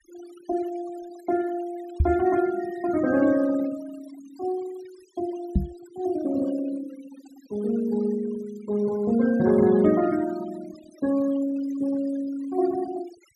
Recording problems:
noise reduction artefacts; signal-to-artefact ratio 19 dB
microphone thump; at 2 s and at 5.5 s; peak +7 dB vs average level

